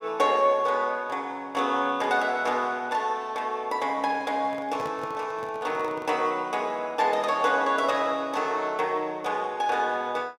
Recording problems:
handling noise; from 4.5 to 6 s; peak -8 dB vs average level

